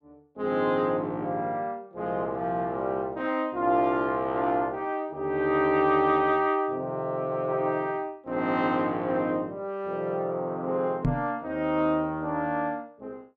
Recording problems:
knock on the microphone; at 11 s; peak +5 dB vs average level

